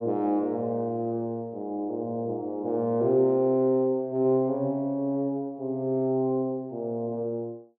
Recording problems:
none

